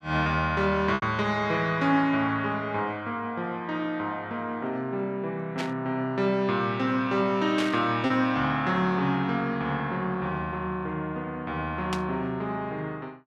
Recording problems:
lost packets; 0.9% of the sound replaced, filled with repeated pitch periods
burst of static; at 5.5 s, at 7.5 s and at 12 s; peak -1 dB vs average level

